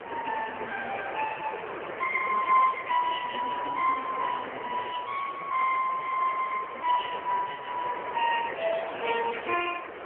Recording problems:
phone line; 300 Hz to 3.1 kHz, AMR-NB
hiss; SNR 10 dB

